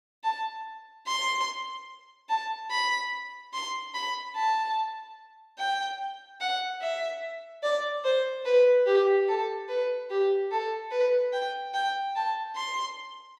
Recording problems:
none

